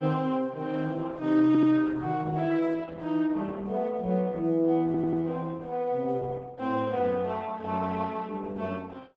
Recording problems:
lossy compression; Opus, log-spectral distance 3 dB
stutter; at 1.5 s and at 5 s

